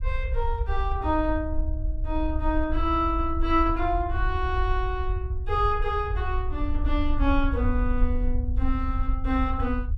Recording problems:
rumble; below 64 Hz, SNR 1 dB

